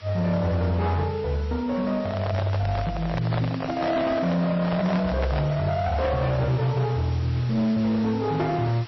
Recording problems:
codec artefacts; MP3, then AAC, log-spectral distance 3 dB, nothing above 5.7 kHz
distorted audio; hard clipping, uneven, signal-to-distortion ratio 10 dB
hiss; slope -1 dB per octave, SNR 20 dB
microphone handling noise; from 2 to 5.5 s; peak -1 dB vs average level

